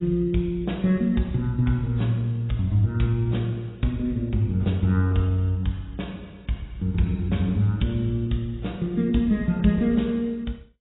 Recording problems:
lossy codec; AAC, log-spectral distance 2 dB, nothing above 3.8 kHz

